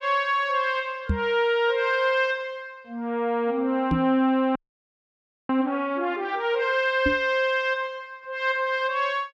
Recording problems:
knock on the microphone; at 1 s, at 4 s and at 7 s; peak +3 dB vs average level
frozen audio; at 4.5 s for 1 s

